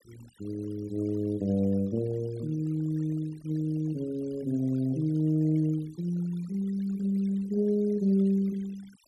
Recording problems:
denoising artefacts; signal-to-artefact ratio 26 dB

